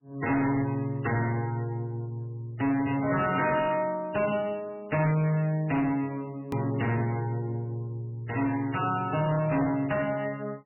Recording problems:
lossy compression; MP3, log-spectral distance 3 dB, nothing above 2.5 kHz
distorted audio; hard clipping, signal-to-distortion ratio 7 dB
click at an edit; at 6.5 s

